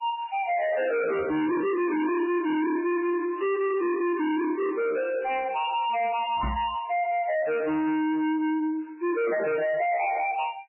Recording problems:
codec artefacts; MP3, log-spectral distance 3 dB, nothing above 2.4 kHz
distortion; soft clipping, signal-to-distortion ratio 6 dB
microphone bump; at 6.5 s; peak 0 dB vs average level

